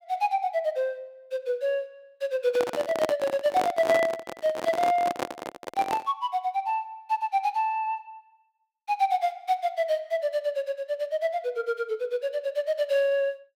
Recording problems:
handling noise; from 2.5 to 6 s; peak +3 dB vs average level

